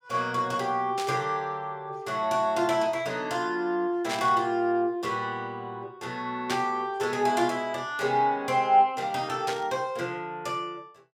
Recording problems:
burst of static; 4 times, first at 1 s; peak -2 dB vs average level

